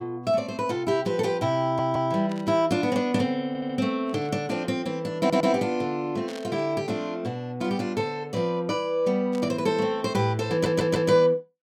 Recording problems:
audio stuttering; 4 times, first at 1.5 s
burst of static; 4 times, first at 2.5 s; peak -12 dB vs average level

